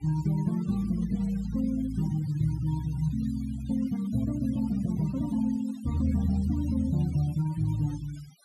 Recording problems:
denoising artefacts; signal-to-artefact ratio 20 dB

